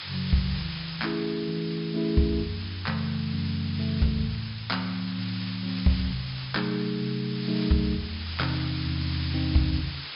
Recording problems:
low-pass filter; nothing above 5.5 kHz
background hiss; SNR 9 dB

